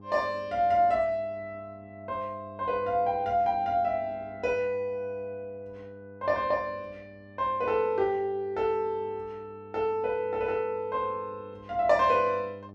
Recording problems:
hum; 50 Hz, harmonics up to 900 Hz, SNR 21 dB

